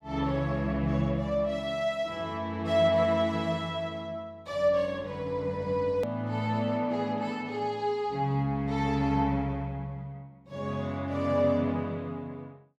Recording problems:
edit click; at 6 s

